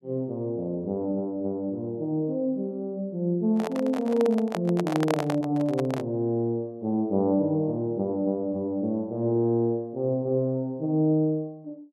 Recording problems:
handling noise; from 3.5 to 6 s; peak +2 dB vs average level

